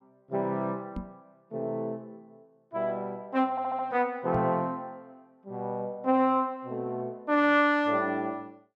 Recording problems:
knock on the microphone; at 1 s and at 4.5 s; peak -2 dB vs average level
audio stuttering; at 3.5 s

